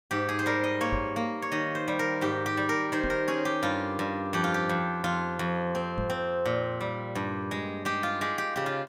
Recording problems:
knock on the microphone; at 1 s, at 3 s and at 6 s; peak -2 dB vs average level

